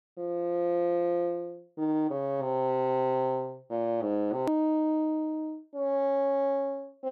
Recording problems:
hard cut with a click; at 4.5 s

